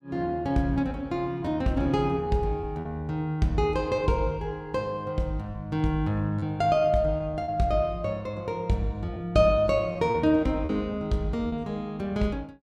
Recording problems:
packet loss; 4% of the sound replaced, filled with repeated pitch periods

